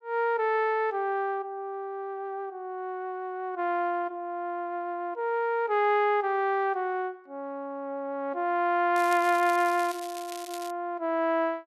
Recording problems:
crackle; from 9 to 11 s; loose cable, SNR 15 dB

